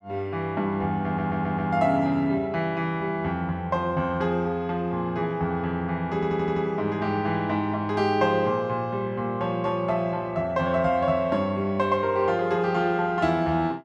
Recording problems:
audio stuttering; at 1 s and at 6 s

